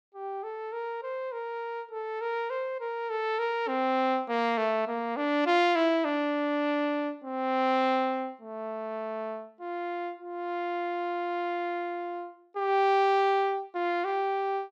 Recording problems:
none

